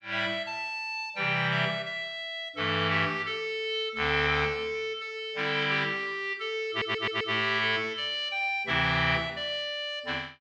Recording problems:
stutter; at 6.5 s

